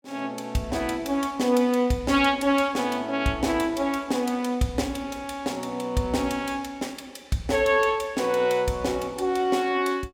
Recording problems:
none

